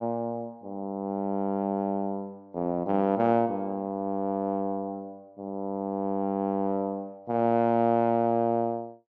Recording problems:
treble missing; nothing above 7 kHz

